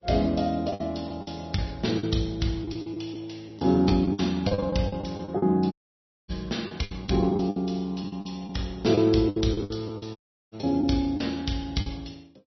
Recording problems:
lossy codec; MP3, log-spectral distance 4 dB, nothing above 5.8 kHz
lost packets; 12% of the sound replaced, filled with the last packet
audio cutting out; at 5.5 s for 0.5 s and at 10 s

